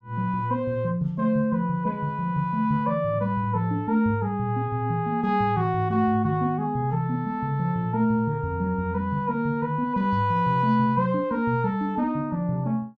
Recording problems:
none

